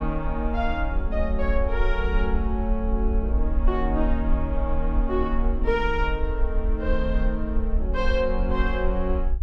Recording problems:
rumble; below 54 Hz, SNR 0 dB

